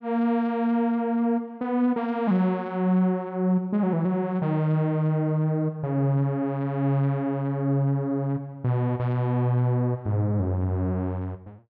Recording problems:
none

